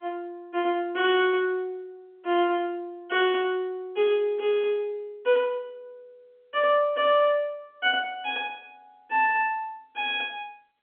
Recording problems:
phone line; 220 Hz to 3.4 kHz, G.711

